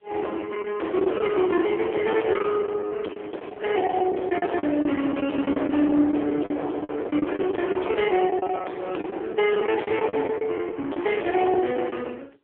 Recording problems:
phone line; 260 Hz to 3.3 kHz, AMR-NB
distorted audio; hard clipping, signal-to-distortion ratio 7 dB
lost packets; 12% of the sound replaced, filled with the last packet

